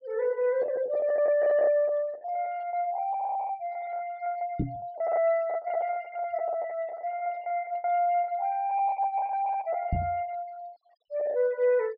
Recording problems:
treble missing; nothing above 5.3 kHz
denoising artefacts; signal-to-artefact ratio 27 dB
packet loss; 13% of the sound replaced, filled with the last packet
knock on the microphone; at 4.5 s and at 10 s; peak +4 dB vs average level

